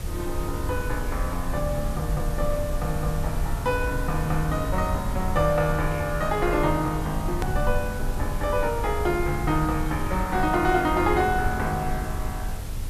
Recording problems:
hiss; slope -2 dB per octave, SNR 15 dB
rumble; below 82 Hz, SNR 5 dB
edit click; at 7.5 s

